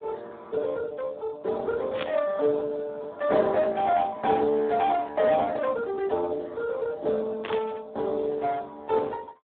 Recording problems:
phone line; 300 Hz to 2.1 kHz, Speex
static burst; at 2 s and at 7.5 s; peak -3 dB vs average level

